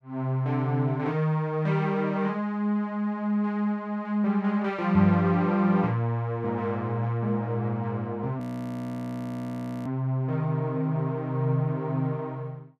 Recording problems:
audio freezing; at 8.5 s for 1.5 s

